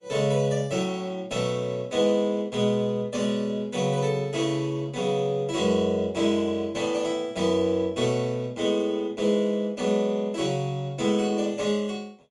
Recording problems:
lossy compression; Vorbis, log-spectral distance 2 dB, nothing above 10.4 kHz

